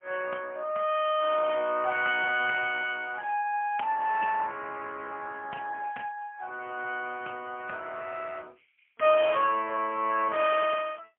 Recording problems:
phone line; 320 Hz to 3 kHz, AMR-NB, then MP3

